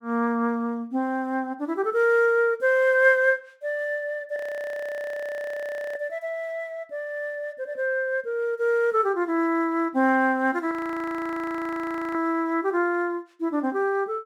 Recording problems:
audio freezing; at 4.5 s for 1.5 s and at 11 s for 1.5 s

